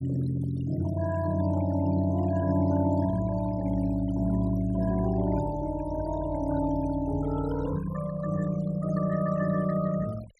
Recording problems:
noise reduction artefacts; signal-to-artefact ratio 18 dB

